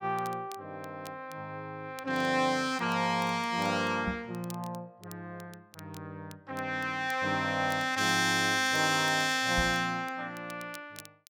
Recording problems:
crackling; vinyl, SNR 25 dB
knock on the microphone; at 4 s and at 9.5 s; peak -3 dB vs average level

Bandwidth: 17 kHz